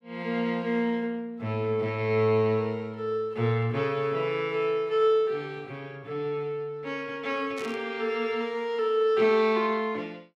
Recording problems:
burst of static; at 7.5 s; peak -11 dB vs average level

